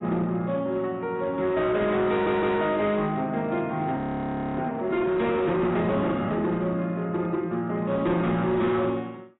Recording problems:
codec artefacts; AAC, log-spectral distance 2 dB, nothing above 3.8 kHz
distorted audio; hard clipping, signal-to-distortion ratio 11 dB
stutter; at 2 s
frozen audio; at 4 s for 0.5 s

